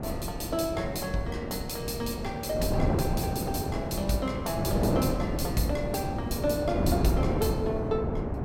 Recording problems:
wind on the microphone; below 430 Hz, SNR -1 dB

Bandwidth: 16.5 kHz